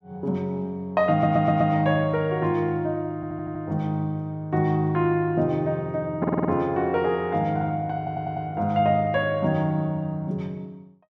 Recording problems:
audio stuttering; 4 times, first at 1 s

